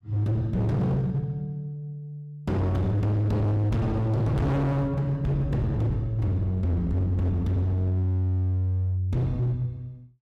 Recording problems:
distortion; hard clipping, uneven, signal-to-distortion ratio 6 dB

